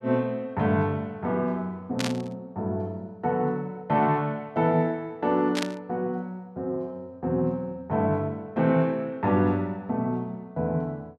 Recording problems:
burst of static; at 2 s and at 5.5 s; peak +1 dB vs average level

